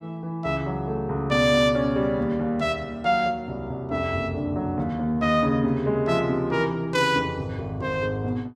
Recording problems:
none

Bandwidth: 14.5 kHz